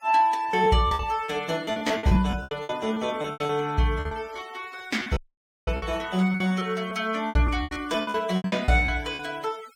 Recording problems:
denoising artefacts; signal-to-artefact ratio 21 dB
lost packets; 17% of the sound replaced, filled with repeated pitch periods
audio cutting out; at 5 s for 0.5 s

